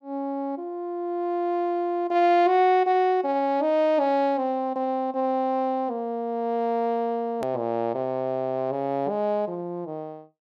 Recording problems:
hard cut with a click; at 7.5 s

